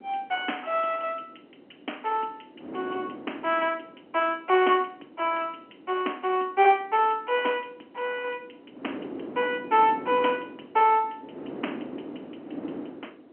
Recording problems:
phone line; 240 Hz to 3.2 kHz, G.711
wind on the microphone; below 470 Hz, SNR 14 dB

